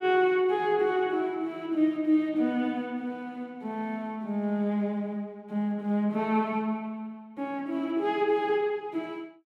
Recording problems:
none

